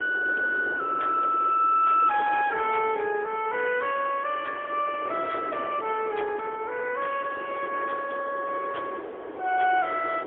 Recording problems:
phone line; 300 Hz to 3.4 kHz, AMR-NB, then MP3
wind on the microphone; below 710 Hz, SNR 12 dB

